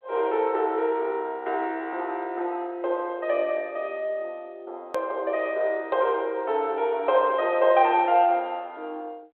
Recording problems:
telephone audio; 300 Hz to 3.6 kHz, G.726
click at an edit; at 5 s

